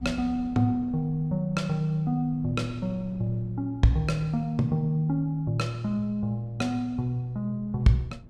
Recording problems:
wind noise; below 200 Hz, SNR 21 dB

